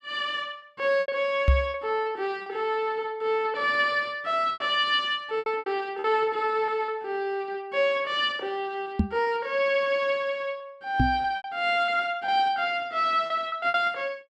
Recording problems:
packet loss; 7% of the sound replaced, filled with repeated pitch periods
knock on the microphone; at 1.5 s, at 9 s and at 11 s; peak +8 dB vs average level

